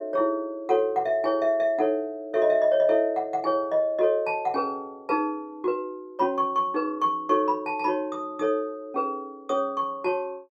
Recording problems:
none

